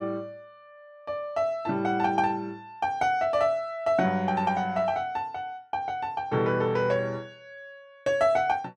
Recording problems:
none

